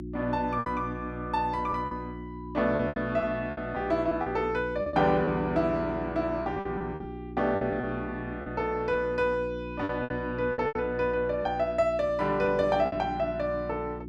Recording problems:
hum; 60 Hz, harmonics up to 360 Hz, SNR 10 dB
lost packets; 8% of the sound replaced, filled with repeated pitch periods

